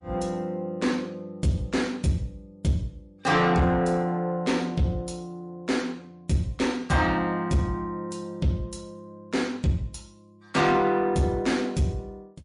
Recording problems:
codec artefacts; MP3, log-spectral distance 2 dB, nothing above 10.4 kHz
distorted audio; soft clipping, signal-to-distortion ratio 11 dB

